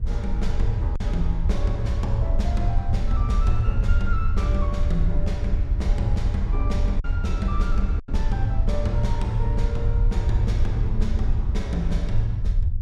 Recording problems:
rumble; below 70 Hz, SNR -5 dB
wind noise; below 250 Hz, SNR 19 dB
lost packets; 1.3% of the sound replaced, filled with silence

